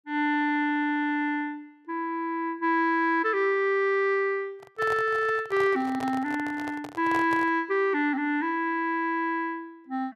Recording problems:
handling noise; from 4.5 to 7.5 s; peak -5 dB vs average level

